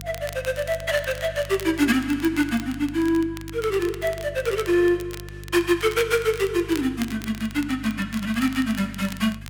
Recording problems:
hum; 50 Hz, harmonics up to 350 Hz, SNR 16 dB
crackling; vinyl, SNR 18 dB

